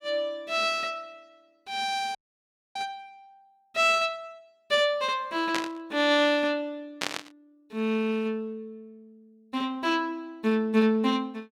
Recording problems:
frozen audio; at 2 s for 0.5 s
burst of static; at 5.5 s and at 7 s; peak +2 dB vs average level

